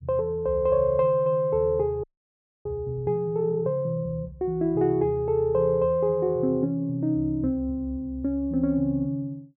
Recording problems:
frozen audio; at 2 s for 0.5 s

